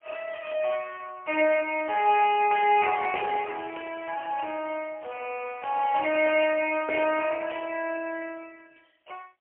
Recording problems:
telephone audio; 370 Hz to 3 kHz, AMR-NB, then MP3

